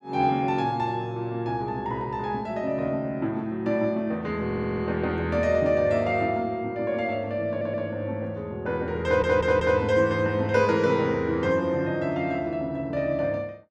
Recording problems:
audio stuttering; at 4.5 s, at 7.5 s and at 9 s

